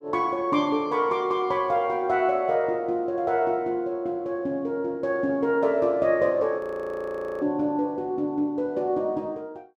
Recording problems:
frozen audio; at 6.5 s for 1 s

